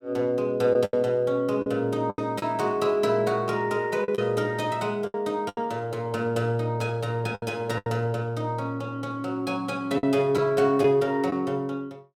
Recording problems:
packet loss; 6% of the sound replaced, filled with the last packet

